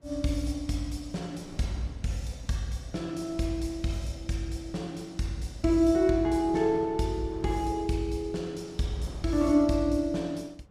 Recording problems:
wind on the microphone; below 440 Hz, SNR 21 dB

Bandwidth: 14.5 kHz